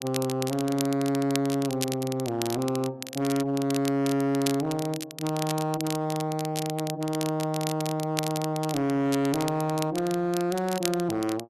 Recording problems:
distortion; hard clipping, signal-to-distortion ratio 11 dB
crackle; vinyl, SNR 10 dB

